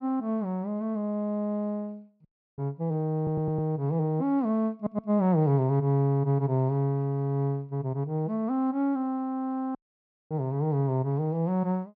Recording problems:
audio cutting out; at 2.5 s and at 10 s for 0.5 s
stutter; at 3 s and at 5 s

